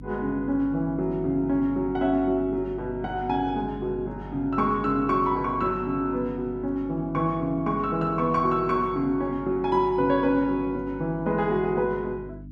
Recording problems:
hum; 50 Hz, harmonics up to 300 Hz, SNR 15 dB

